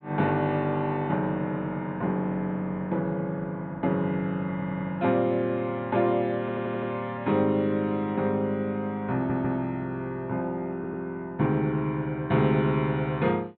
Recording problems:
low-pass filter; nothing above 4.1 kHz
stutter; 4 times, first at 4.5 s

